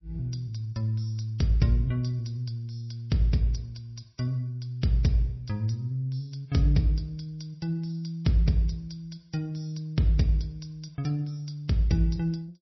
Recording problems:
codec artefacts; MP3, log-spectral distance 3 dB, nothing above 5.7 kHz

